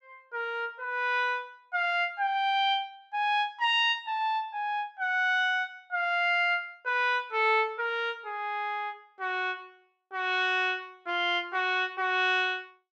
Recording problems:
none

